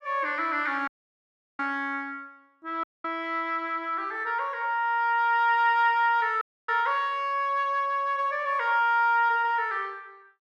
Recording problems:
audio cutting out; at 1 s for 0.5 s, at 3 s and at 6.5 s

